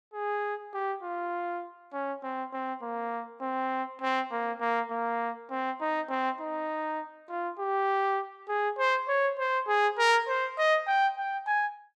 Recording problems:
none

